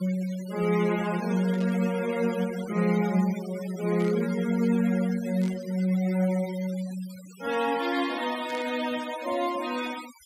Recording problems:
denoising artefacts; signal-to-artefact ratio 15 dB
static burst; 4 times, first at 1.5 s; peak -14 dB vs average level

